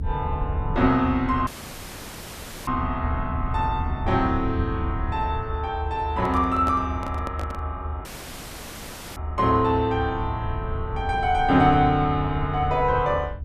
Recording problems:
low-frequency rumble; below 88 Hz, SNR 8 dB
audio cutting out; at 1.5 s for 1 s and at 8 s for 1 s
microphone handling noise; from 6 to 7.5 s; peak -5 dB vs average level

